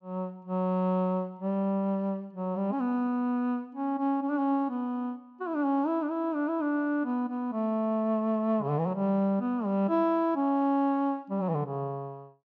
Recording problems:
none

